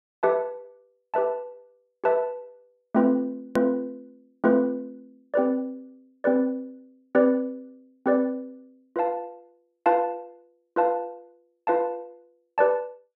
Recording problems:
edit click; at 3.5 s

